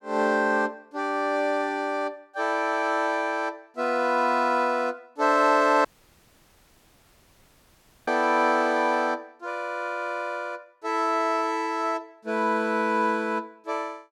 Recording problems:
dropout; at 6 s for 2 s

